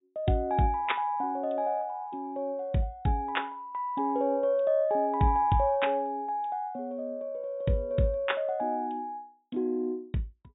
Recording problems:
treble missing; nothing above 4 kHz

